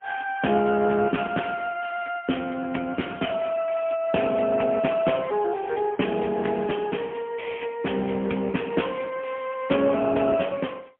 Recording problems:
telephone audio; 220 Hz to 3.3 kHz, AMR-NB, then MP3

